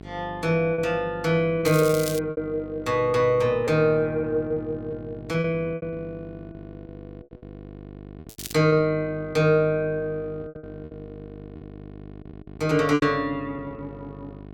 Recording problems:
hum; 50 Hz, harmonics up to 1.1 kHz, SNR 18 dB
lost packets; 7% of the sound replaced, filled with repeated pitch periods
crackle; at 1.5 s and at 8.5 s; loose cable, SNR 12 dB

